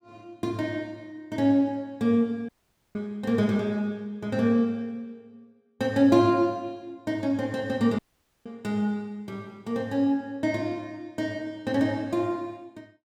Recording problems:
dropout; at 2.5 s and at 8 s

